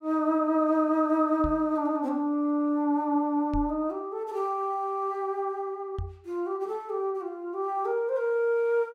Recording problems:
microphone thump; at 1.5 s, at 3.5 s and at 6 s; peak -3 dB vs average level

